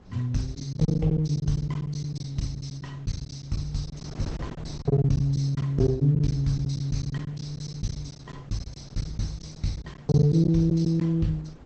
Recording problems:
lossy codec; Opus, log-spectral distance 4 dB
wind noise; below 360 Hz, SNR 20 dB
lost packets; 12% of the sound replaced, filled with silence

